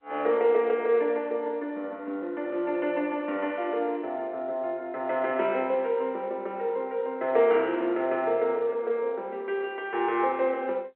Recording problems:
telephone audio; 300 Hz to 3.3 kHz, G.711

